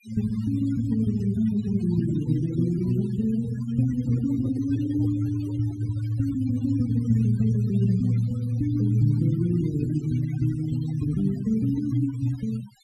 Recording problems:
denoising artefacts; signal-to-artefact ratio 20 dB
handling noise; from 4 to 6 s; peak -12 dB vs average level

